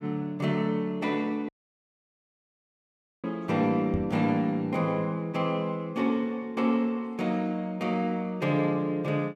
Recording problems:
audio cutting out; at 1.5 s for 2 s
microphone bump; at 4 s; peak 0 dB vs average level

